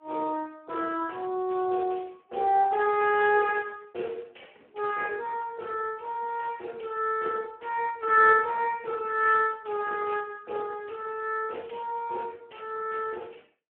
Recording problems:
phone line; 280 Hz to 2.6 kHz, Speex

